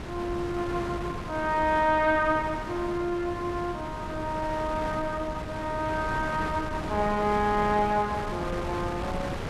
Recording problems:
wind on the microphone; below 960 Hz, SNR 8 dB

